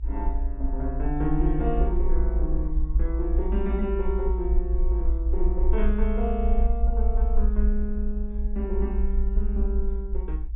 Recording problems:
treble missing; nothing above 4 kHz
low-frequency rumble; below 54 Hz, SNR -4 dB

